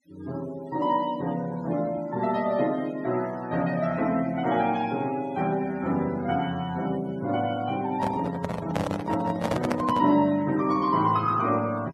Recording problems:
noise reduction artefacts; signal-to-artefact ratio 20 dB
handling noise; from 8 to 10 s; peak +3 dB vs average level

